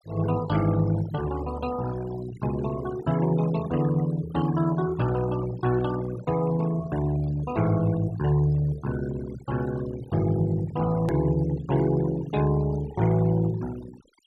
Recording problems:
denoising artefacts; signal-to-artefact ratio 16 dB
click at an edit; at 11 s

